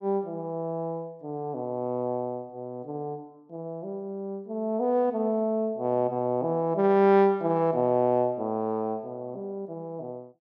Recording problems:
none

